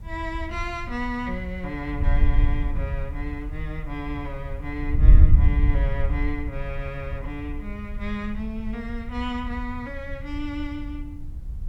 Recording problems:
background hiss; slope -6 dB per octave, SNR 28 dB
wind on the microphone; below 70 Hz, SNR -5 dB

